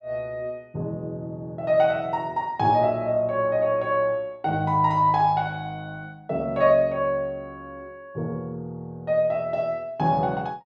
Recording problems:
none

